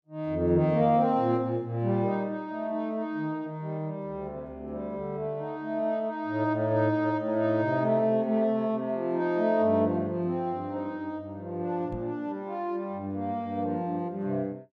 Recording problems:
knock on the microphone; at 12 s; peak -5 dB vs average level

